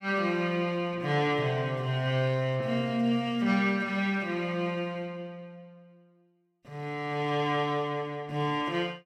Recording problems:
none

